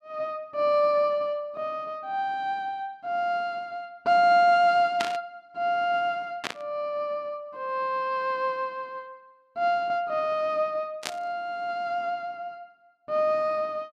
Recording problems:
static burst; at 5 s, at 6.5 s and at 11 s; peak +1 dB vs average level

